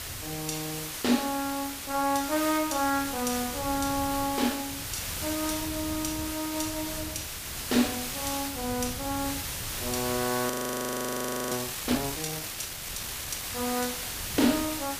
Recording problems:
background hiss; slope 0 dB per octave, SNR 3 dB
wind on the microphone; below 180 Hz, SNR 14 dB
audio freezing; at 11 s for 1 s

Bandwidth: 15 kHz